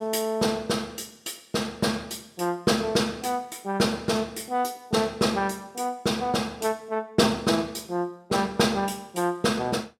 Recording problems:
none

